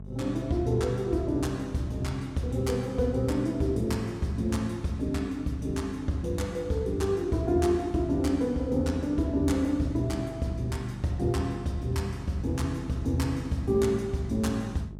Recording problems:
mains hum; 50 Hz, harmonics up to 650 Hz, SNR 15 dB

